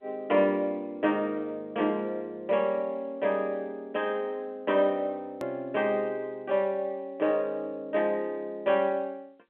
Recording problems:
telephone audio; 220 Hz to 3.4 kHz, G.711
click at an edit; at 5.5 s

